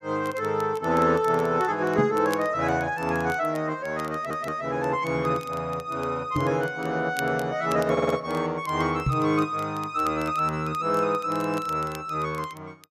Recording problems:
crackle; vinyl, SNR 22 dB
microphone thump; at 2 s, at 6.5 s and at 9 s; peak +4 dB vs average level
stutter; at 4 s and at 8 s

